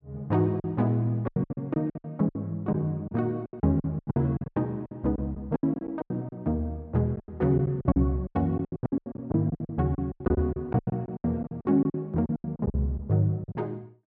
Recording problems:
lost packets; 20% of the sound replaced, filled with silence

